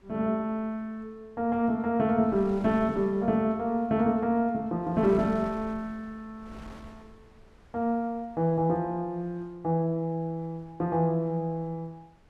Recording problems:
wind on the microphone; below 560 Hz, SNR 23 dB

